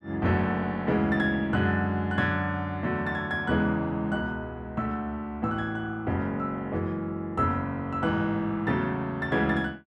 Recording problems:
none

